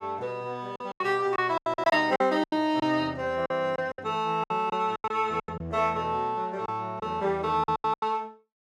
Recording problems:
lost packets; 13% of the sound replaced, filled with silence

